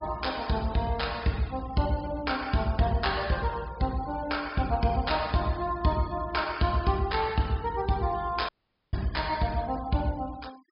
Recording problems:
low-pass filter; nothing above 5.5 kHz
denoising artefacts; signal-to-artefact ratio 20 dB
dropout; at 8.5 s

